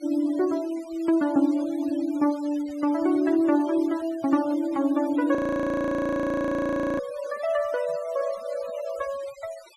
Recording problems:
noise reduction artefacts; signal-to-artefact ratio 21 dB
frozen audio; at 5.5 s for 1.5 s

